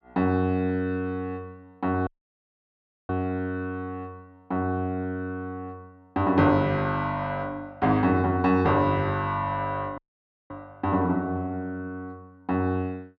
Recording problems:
audio cutting out; at 2 s for 1 s and at 10 s for 0.5 s

